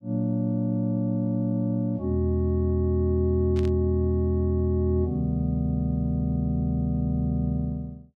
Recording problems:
static burst; at 3.5 s; peak -13 dB vs average level

